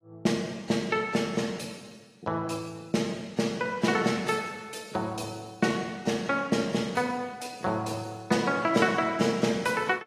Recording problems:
lossy compression; AAC, log-spectral distance 4 dB, nothing above 12.7 kHz

